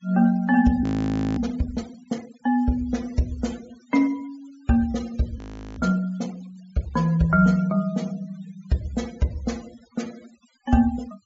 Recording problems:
low-pass filter; nothing above 8 kHz
denoising artefacts; signal-to-artefact ratio 23 dB
frozen audio; at 1 s for 0.5 s and at 5.5 s

